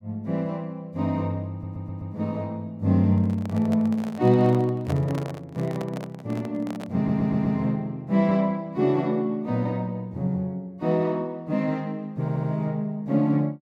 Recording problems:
audio stuttering; at 1.5 s, at 7 s and at 12 s
microphone handling noise; from 3 to 7.5 s; peak -4 dB vs average level

